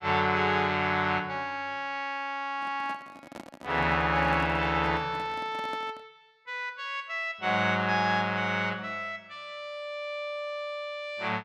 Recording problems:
microphone handling noise; from 2.5 to 6 s; peak -9 dB vs average level

